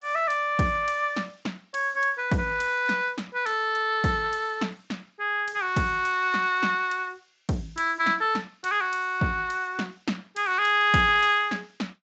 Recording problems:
codec artefacts; Speex, log-spectral distance 4 dB, nothing above 7.6 kHz

